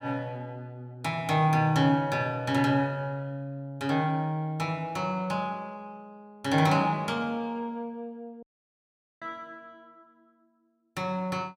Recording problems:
audio cutting out; at 8.5 s for 1 s

